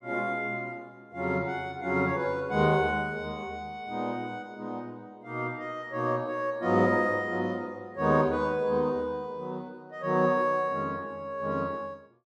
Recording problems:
none

